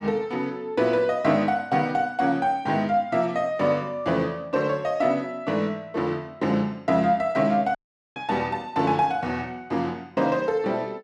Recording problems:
dropout; at 8 s

